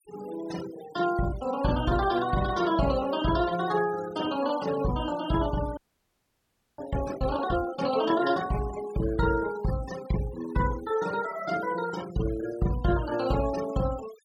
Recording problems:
denoising artefacts; signal-to-artefact ratio 15 dB
audio freezing; at 6 s for 1 s

